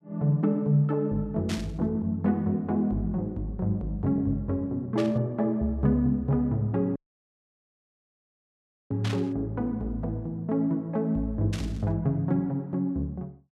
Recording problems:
burst of static; 4 times, first at 1.5 s; peak -5 dB vs average level
dropout; at 7 s for 2 s

